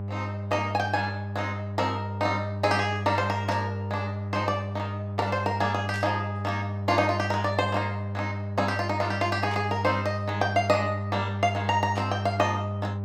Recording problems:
hum; 50 Hz, harmonics up to 800 Hz, SNR 5 dB
burst of static; 4 times, first at 3.5 s; peak -9 dB vs average level

